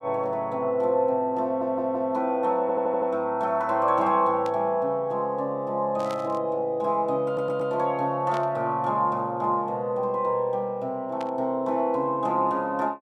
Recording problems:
stutter; at 1.5 s, at 2.5 s and at 7.5 s
burst of static; 4 times, first at 4.5 s; peak -11 dB vs average level

